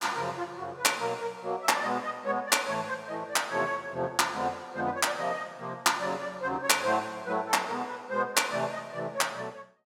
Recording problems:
none

